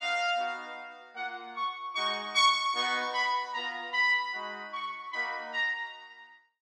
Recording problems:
none

